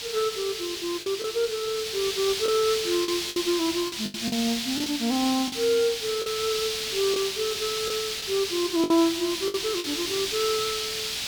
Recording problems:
hiss; SNR 2 dB
packet loss; 6% of the sound replaced, filled with the last packet

